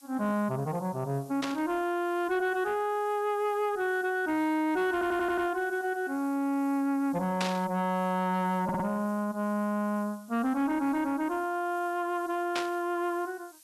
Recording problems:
distorted audio; soft clipping, signal-to-distortion ratio 10 dB
background hiss; slope +3 dB per octave, SNR 25 dB
burst of static; at 1.5 s, at 7.5 s and at 13 s; peak +1 dB vs average level
stutter; at 5 s and at 8.5 s

